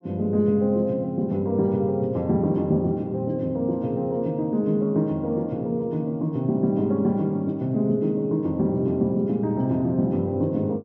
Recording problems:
none

